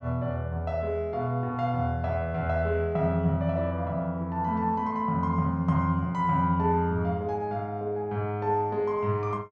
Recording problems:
none

